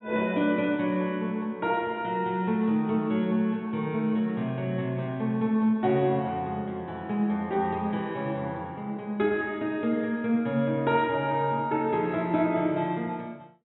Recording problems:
treble missing; nothing above 3.9 kHz

